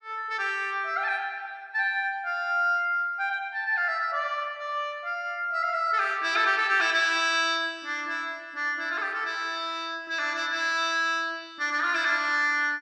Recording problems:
none

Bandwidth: 12.5 kHz